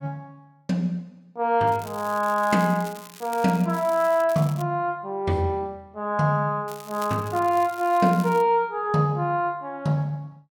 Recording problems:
crackling; from 1.5 to 4.5 s and from 6.5 to 8.5 s; loose cable, SNR 20 dB

